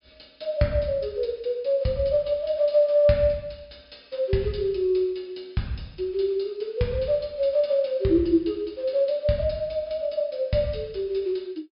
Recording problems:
treble missing; nothing above 5.5 kHz

